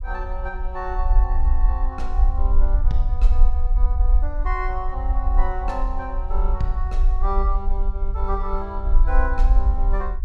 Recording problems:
rumble; below 48 Hz, SNR -7 dB

